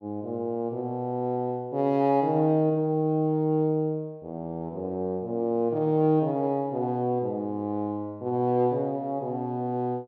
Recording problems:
none

